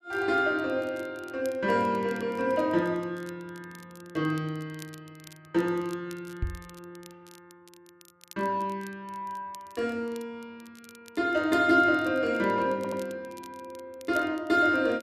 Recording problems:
crackle; vinyl, SNR 26 dB
microphone bump; at 6.5 s; peak 0 dB vs average level
audio stuttering; at 13 s

